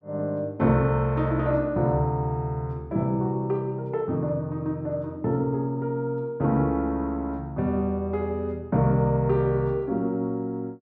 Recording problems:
none

